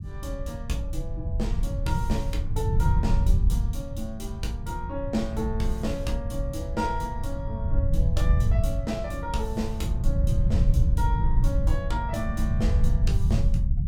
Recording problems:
low-frequency rumble; below 96 Hz, SNR -5 dB

